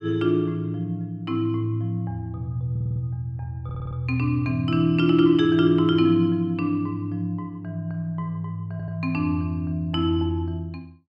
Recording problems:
stutter; at 2.5 s, at 3.5 s and at 8.5 s

